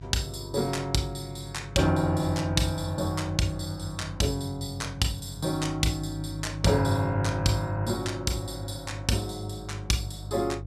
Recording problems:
hum; 50 Hz, harmonics up to 450 Hz, SNR 12 dB

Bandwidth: 14 kHz